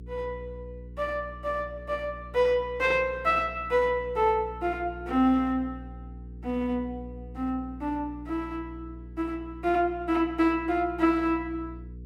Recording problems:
hum; 60 Hz, harmonics up to 480 Hz, SNR 16 dB

